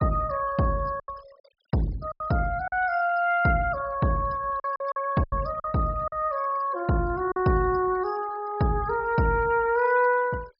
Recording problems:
treble cut off; nothing above 5.5 kHz
noise reduction artefacts; signal-to-artefact ratio 22 dB
packet loss; 5% of the sound replaced, filled with silence

